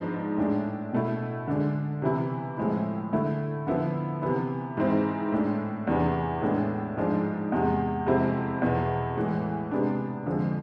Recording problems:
none

